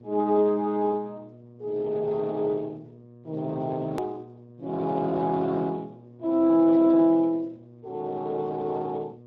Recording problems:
lossy compression; Speex, log-spectral distance 2 dB, nothing above 13.1 kHz
hum; 60 Hz, harmonics up to 720 Hz, SNR 24 dB
hard cut with a click; at 4 s

